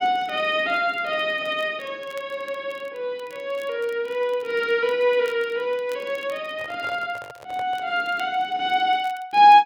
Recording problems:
crackle; vinyl, SNR 28 dB
handling noise; from 6.5 to 8 s; peak -11 dB vs average level

